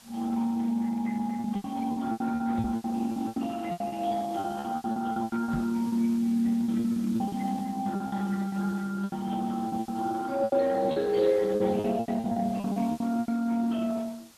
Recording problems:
codec artefacts; MP3, then Speex, log-spectral distance 3 dB
hiss; slope 0 dB per octave, SNR 24 dB
packet loss; 15% of the sound replaced, filled with repeated pitch periods
microphone thump; at 2.5 s and at 5.5 s; peak 0 dB vs average level

